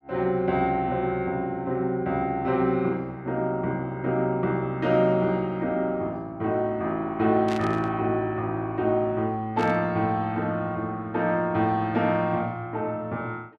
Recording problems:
burst of static; at 7.5 s and at 9.5 s; peak -7 dB vs average level

